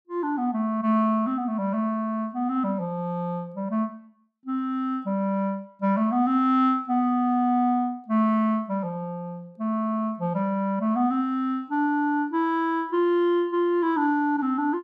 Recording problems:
none

